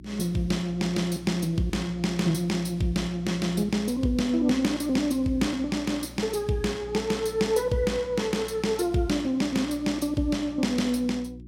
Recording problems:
electrical hum; 60 Hz, harmonics up to 360 Hz, SNR 18 dB

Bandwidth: 16 kHz